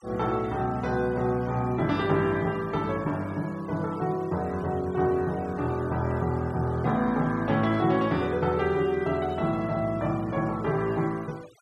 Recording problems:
denoising artefacts; signal-to-artefact ratio 23 dB

